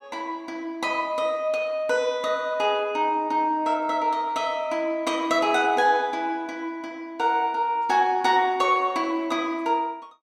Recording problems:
none

